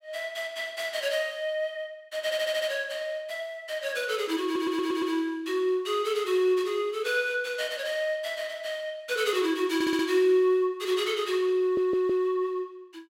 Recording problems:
audio stuttering; 4 times, first at 2.5 s

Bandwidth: 16 kHz